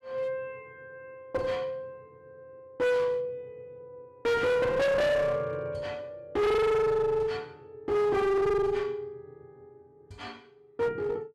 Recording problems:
distorted audio; hard clipping, uneven, signal-to-distortion ratio 5 dB

